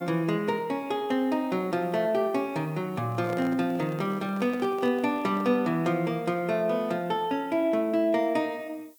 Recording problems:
background hiss; SNR 29 dB
microphone handling noise; from 3 to 5.5 s; peak -8 dB vs average level

